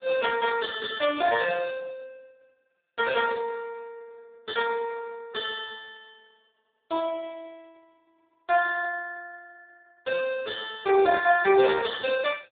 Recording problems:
telephone audio; 220 Hz to 3.2 kHz, AMR-NB

